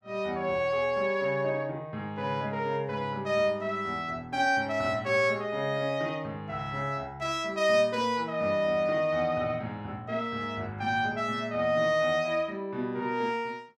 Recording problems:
none

